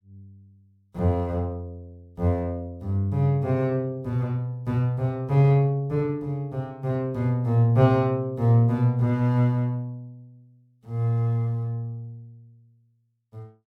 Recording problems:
none

